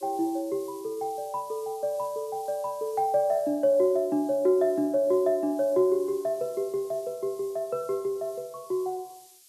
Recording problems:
background hiss; SNR 23 dB

